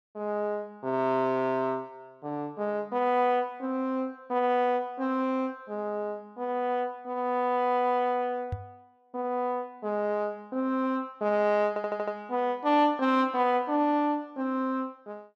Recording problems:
knock on the microphone; at 8.5 s; peak -1 dB vs average level
stutter; at 12 s

